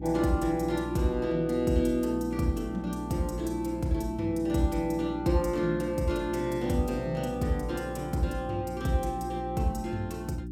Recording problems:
hum; 60 Hz, harmonics up to 360 Hz, SNR 10 dB

